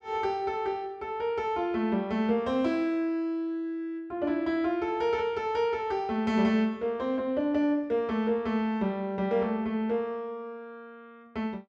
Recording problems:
none

